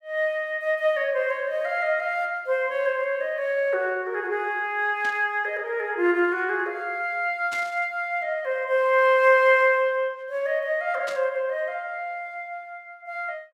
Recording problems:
static burst; at 5 s, at 7.5 s and at 11 s; peak -9 dB vs average level

